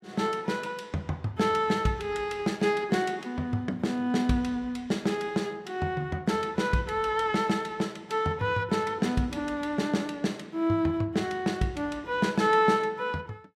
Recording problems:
none

